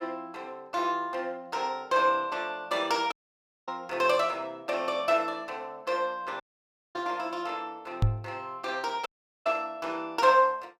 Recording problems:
dropout; at 3 s for 0.5 s, at 6.5 s for 0.5 s and at 9 s
knock on the microphone; at 8 s; peak +8 dB vs average level

